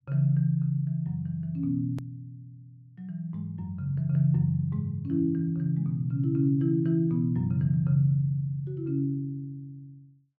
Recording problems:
hard cut with a click; at 2 s

